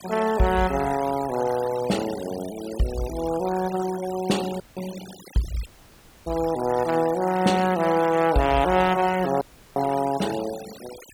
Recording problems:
noise reduction artefacts; signal-to-artefact ratio 15 dB
dropout; at 4.5 s, at 5.5 s for 0.5 s and at 9.5 s

